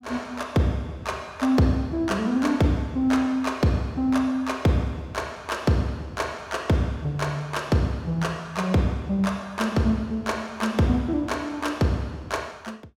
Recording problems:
none

